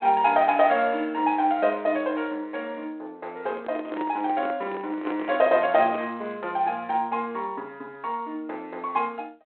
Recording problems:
telephone audio; 260 Hz to 3.4 kHz, G.726
microphone handling noise; from 3.5 to 6 s; peak -5 dB vs average level

